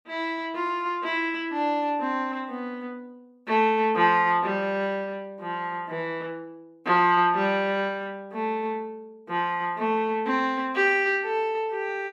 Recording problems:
none

